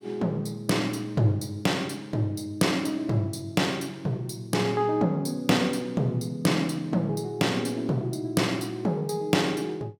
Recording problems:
none

